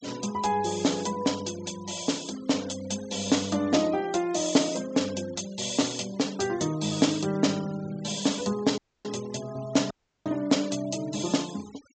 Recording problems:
treble cut off; nothing above 8 kHz
denoising artefacts; signal-to-artefact ratio 19 dB
audio cutting out; at 9 s and at 10 s

